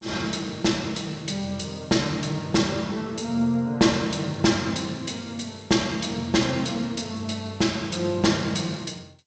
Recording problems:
lossy compression; G.722, log-spectral distance 5 dB, nothing above 7.6 kHz

